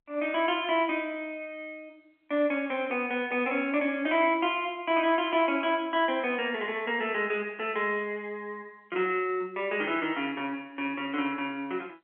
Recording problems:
phone line; 260 Hz to 3.2 kHz, G.711

